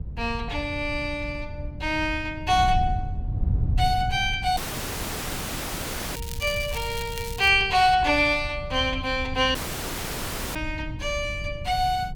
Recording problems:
wind noise; below 110 Hz, SNR 9 dB
audio cutting out; at 4.5 s for 1.5 s and at 9.5 s for 1 s
crackling; from 6 to 7.5 s; loose cable, SNR 14 dB

